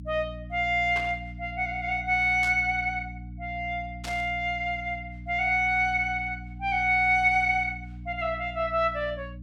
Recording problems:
hum; 60 Hz, harmonics up to 300 Hz, SNR 15 dB
burst of static; at 1 s, at 2.5 s and at 4 s; peak -7 dB vs average level

